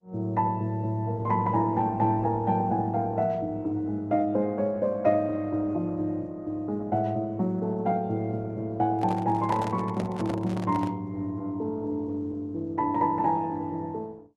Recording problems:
lossy codec; Opus, log-spectral distance 2 dB
handling noise; from 9 to 11 s; peak -4 dB vs average level

